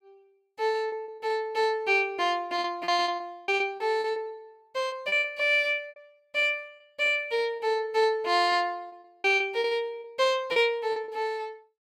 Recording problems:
packet loss; 10% of the sound replaced, filled with repeated pitch periods

